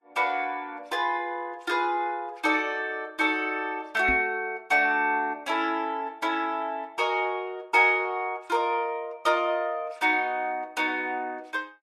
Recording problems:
lossy compression; Vorbis, log-spectral distance 2 dB, nothing above 12.7 kHz
knock on the microphone; at 4 s; peak -4 dB vs average level

